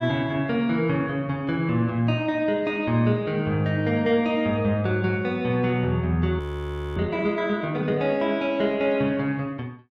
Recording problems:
frozen audio; at 6.5 s for 0.5 s

